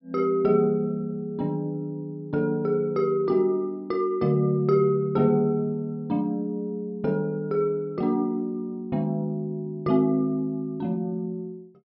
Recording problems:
none

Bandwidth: 5.5 kHz